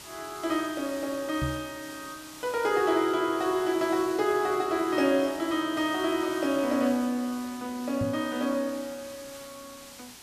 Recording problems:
background hiss; slope 0 dB per octave, SNR 16 dB
microphone bump; at 1.5 s and at 8 s; peak 0 dB vs average level

